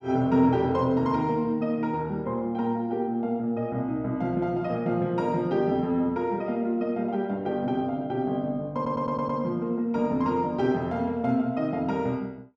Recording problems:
stutter; at 9 s

